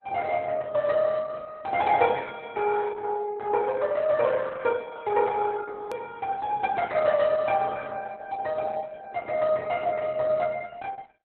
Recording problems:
lossy compression; Opus, log-spectral distance 3 dB
click at an edit; at 6 s

